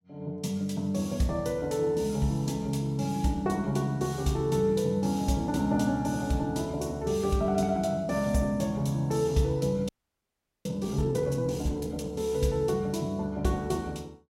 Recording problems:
frozen audio; at 10 s for 1 s

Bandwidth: 16 kHz